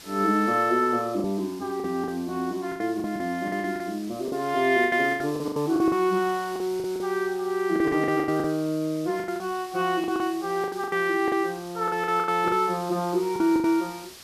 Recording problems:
background hiss; slope 0 dB per octave, SNR 19 dB
lost packets; 13% of the sound replaced, filled with the last packet

